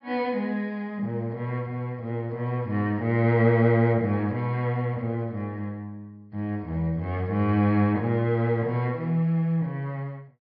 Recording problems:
treble cut off; nothing above 5.5 kHz

